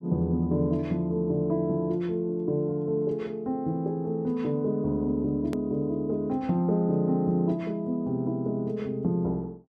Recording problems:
hard cut with a click; at 5.5 s

